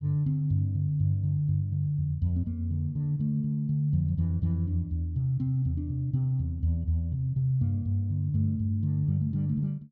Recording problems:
none

